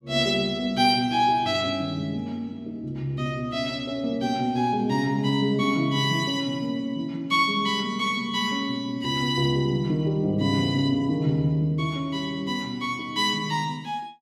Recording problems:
none

